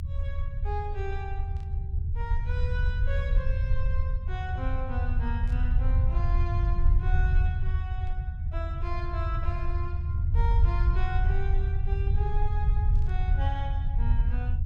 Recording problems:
low-frequency rumble; below 80 Hz, SNR -10 dB
static burst; 4 times, first at 1.5 s; peak -14 dB vs average level

